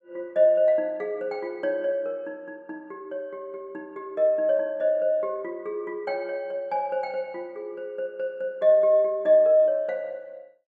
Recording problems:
none

